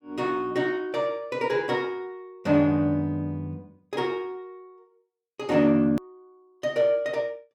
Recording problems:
click at an edit; at 6 s

